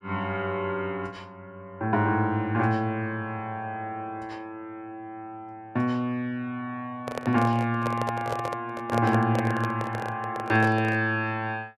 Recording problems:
microphone handling noise; from 7 to 11 s; peak +1 dB vs average level

